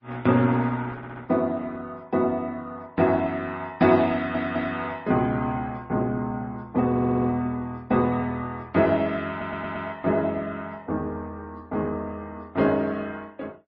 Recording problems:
lossy compression; Opus, then MP3, log-spectral distance 2 dB, nothing above 4.9 kHz
stutter; 4 times, first at 1 s

